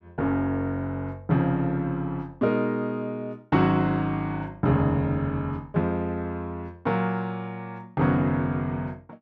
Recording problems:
none

